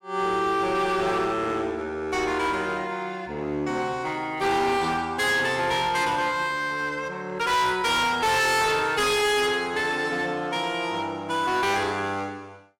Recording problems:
distortion; hard clipping, uneven, signal-to-distortion ratio 6 dB

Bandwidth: 16 kHz